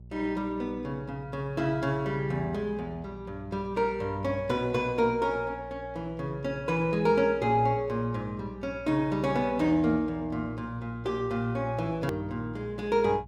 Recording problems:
electrical hum; 60 Hz, harmonics up to 420 Hz, SNR 18 dB
edit click; at 12 s

